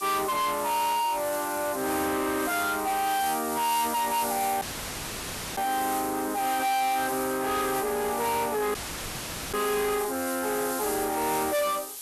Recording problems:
distorted audio; soft clipping, signal-to-distortion ratio 8 dB
hiss; slope +2 dB per octave, SNR 8 dB
dropout; at 4.5 s for 1 s and at 9 s for 1 s

